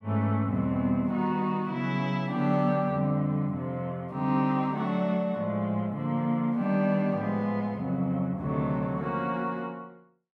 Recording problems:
none

